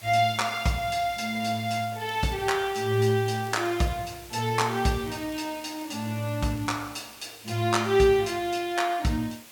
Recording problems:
background hiss; slope -1 dB per octave, SNR 19 dB
crackling; from 1.5 to 4 s and from 4.5 to 6.5 s; loose cable, SNR 28 dB

